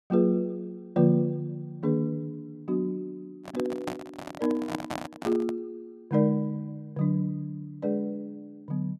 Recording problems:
handling noise; from 3.5 to 5.5 s; peak 0 dB vs average level

